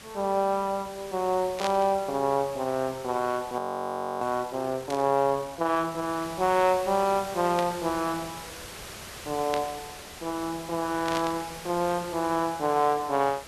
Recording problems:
background hiss; slope -2 dB per octave, SNR 14 dB
burst of static; 5 times, first at 1.5 s; peak -2 dB vs average level
frozen audio; at 3.5 s for 0.5 s

